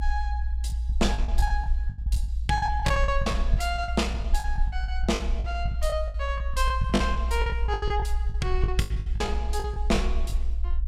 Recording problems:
low-frequency rumble; below 60 Hz, SNR 0 dB
packet loss; 17% of the sound replaced, filled with the last packet

